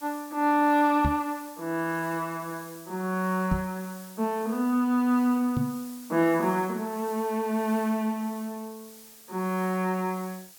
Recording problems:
hiss; slope 0 dB per octave, SNR 19 dB
microphone bump; at 1 s, at 3.5 s and at 5.5 s; peak +3 dB vs average level

